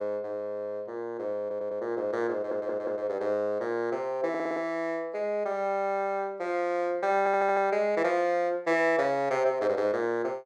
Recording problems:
stutter; 4 times, first at 1.5 s

